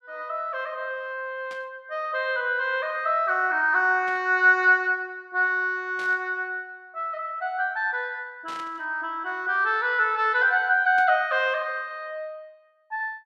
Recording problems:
burst of static; 5 times, first at 1.5 s; peak -14 dB vs average level

